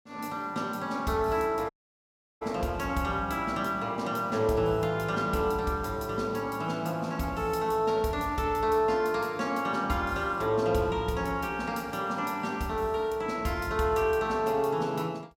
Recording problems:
audio cutting out; at 1.5 s for 0.5 s

